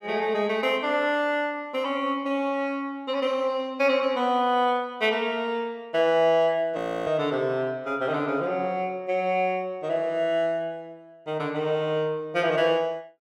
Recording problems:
frozen audio; at 7 s

